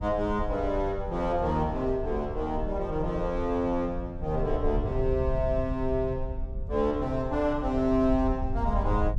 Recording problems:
low-frequency rumble; below 74 Hz, SNR 7 dB

